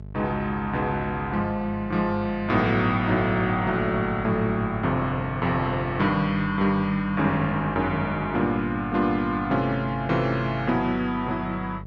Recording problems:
electrical hum; 50 Hz, harmonics up to 650 Hz, SNR 14 dB

